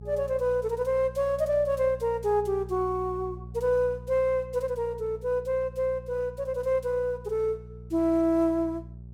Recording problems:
hum; 60 Hz, harmonics up to 420 Hz, SNR 16 dB

